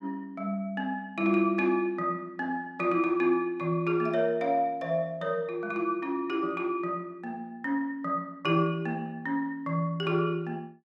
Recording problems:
none

